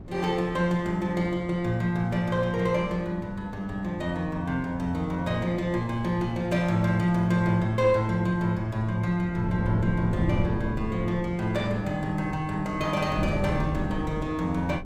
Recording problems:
wind on the microphone; below 260 Hz, SNR 10 dB

